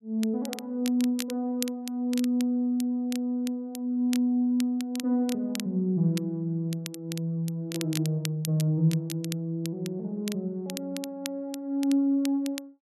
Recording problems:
crackle; vinyl, SNR 13 dB

